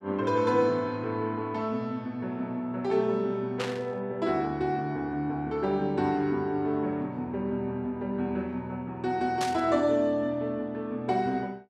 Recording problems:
static burst; at 3.5 s and at 9.5 s; peak -1 dB vs average level

